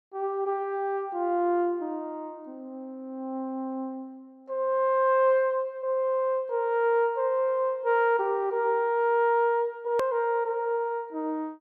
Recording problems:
hard cut with a click; at 10 s

